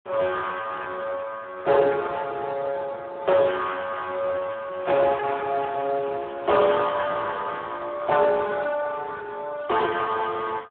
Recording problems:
telephone audio; 300 Hz to 2 kHz, Speex
crackle; from 4.5 to 7 s and at 9.5 s; loose cable, SNR 27 dB

